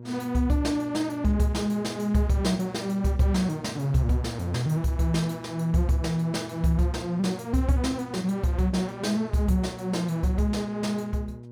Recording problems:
hum; 60 Hz, harmonics up to 600 Hz, SNR 16 dB

